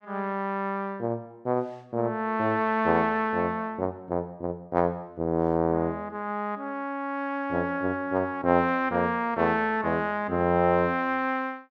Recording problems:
none

